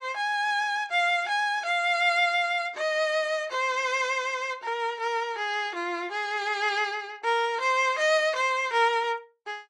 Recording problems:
codec artefacts; AAC, log-spectral distance 2 dB

